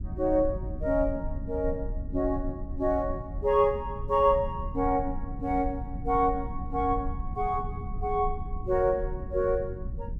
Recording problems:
low-frequency rumble; below 88 Hz, SNR 9 dB

